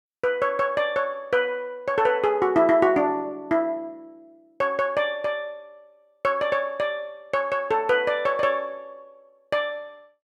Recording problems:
none

